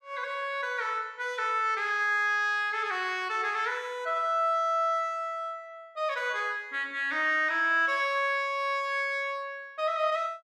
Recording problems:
none

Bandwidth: 14 kHz